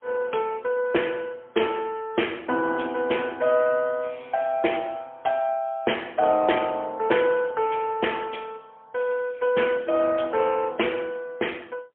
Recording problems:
phone line; 280 Hz to 3.3 kHz, AMR-NB, then MP3

